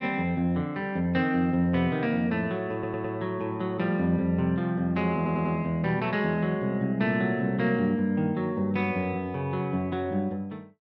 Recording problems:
audio stuttering; at 2.5 s and at 5 s

